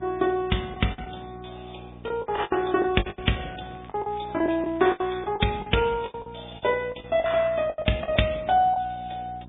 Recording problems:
low-pass filter; nothing above 3.7 kHz
lossy compression; MP3, log-spectral distance 6 dB
electrical hum; 60 Hz, harmonics up to 1 kHz, SNR 20 dB
lost packets; 13% of the sound replaced, filled with the last packet
crackle; from 3 to 4.5 s and at 4.5 s; loose cable, SNR 29 dB

